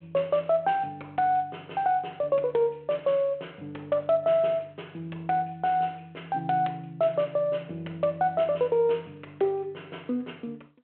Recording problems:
telephone audio; 240 Hz to 3.6 kHz, G.726

